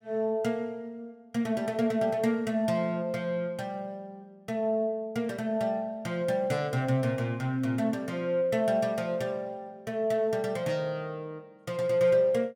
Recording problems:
none

